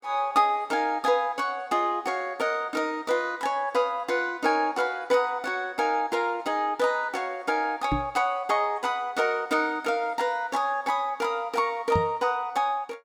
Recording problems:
knock on the microphone; at 8 s and at 12 s; peak +2 dB vs average level

